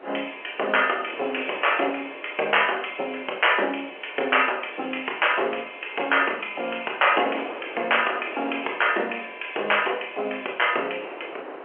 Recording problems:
telephone audio; 320 Hz to 3.2 kHz, G.711
wind on the microphone; below 1.2 kHz, SNR 16 dB

